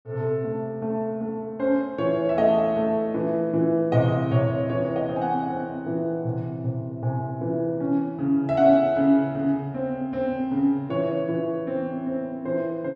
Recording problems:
none

